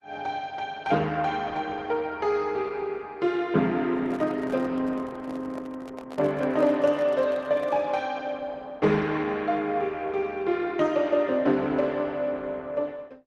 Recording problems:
codec artefacts; Opus, log-spectral distance 3 dB
handling noise; from 4 to 8 s; peak -9 dB vs average level

